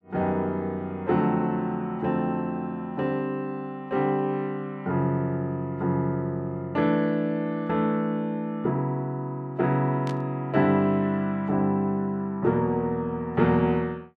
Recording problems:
burst of static; at 10 s; peak -12 dB vs average level

